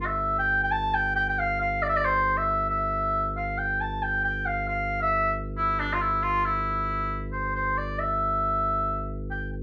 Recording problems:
hum; 50 Hz, harmonics up to 500 Hz, SNR 9 dB

